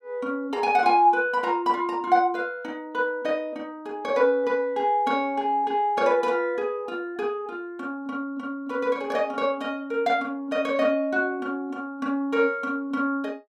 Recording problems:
none

